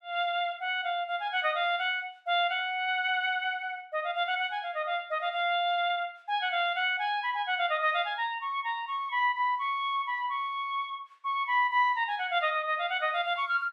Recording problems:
none

